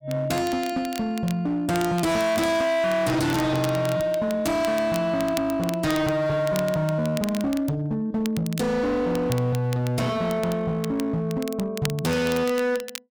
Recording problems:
distorted audio; hard clipping, signal-to-distortion ratio 7 dB
crackle; vinyl, SNR 15 dB

